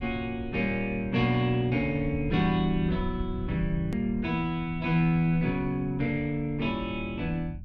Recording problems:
low-frequency rumble; below 110 Hz, SNR 12 dB
hard cut with a click; at 4 s

